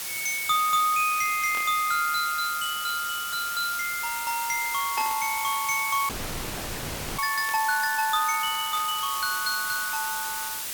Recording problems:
hiss; slope +2 dB per octave, SNR 5 dB
static burst; 4 times, first at 1.5 s; peak -9 dB vs average level
audio freezing; at 6 s for 1 s

